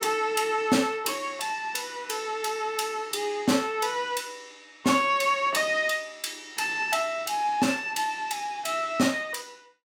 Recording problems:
none

